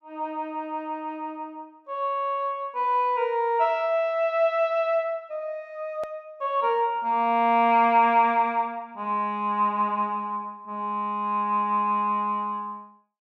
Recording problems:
edit click; at 6 s

